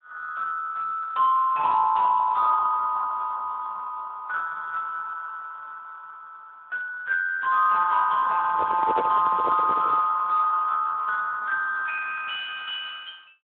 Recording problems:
phone line; 990 Hz to 2.5 kHz, Speex
microphone handling noise; from 8.5 to 10 s; peak +1 dB vs average level

